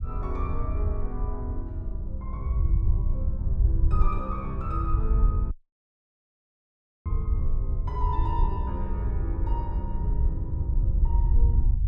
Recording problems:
rumble; below 72 Hz, SNR -9 dB
dropout; at 5.5 s for 1.5 s

